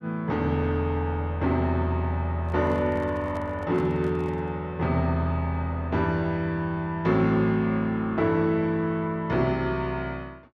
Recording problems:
handling noise; from 2.5 to 4.5 s; peak -12 dB vs average level

